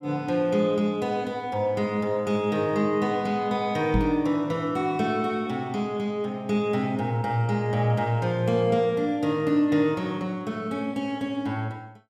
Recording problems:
microphone thump; at 4 s; peak +4 dB vs average level

